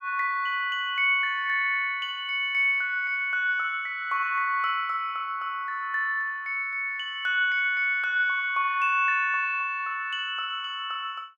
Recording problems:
none

